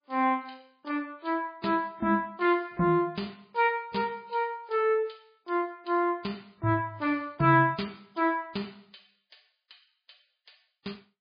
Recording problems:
codec artefacts; MP3, log-spectral distance 5 dB, nothing above 4.4 kHz

